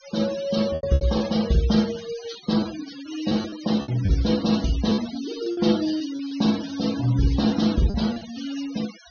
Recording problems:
low-pass filter; nothing above 6.5 kHz
denoising artefacts; signal-to-artefact ratio 14 dB
packet loss; 7% of the sound replaced, filled with repeated pitch periods

